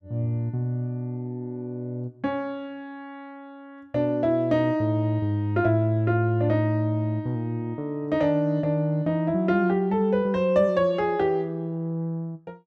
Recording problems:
none

